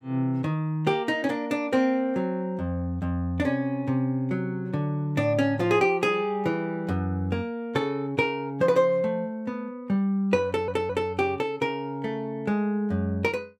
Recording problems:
audio stuttering; at 10 s

